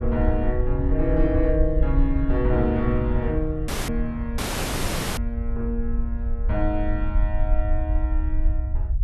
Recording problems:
low-frequency rumble; below 60 Hz, SNR 0 dB
audio cutting out; at 3.5 s and at 4.5 s for 1 s

